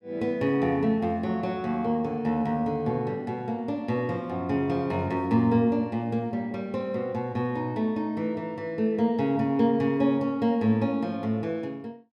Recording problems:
none

